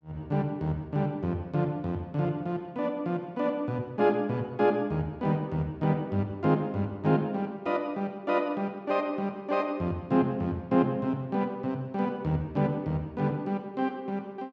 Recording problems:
none

